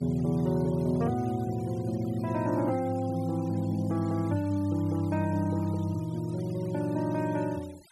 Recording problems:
denoising artefacts; signal-to-artefact ratio 23 dB

